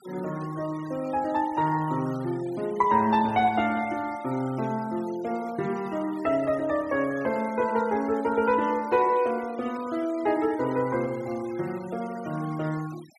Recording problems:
noise reduction artefacts; signal-to-artefact ratio 20 dB

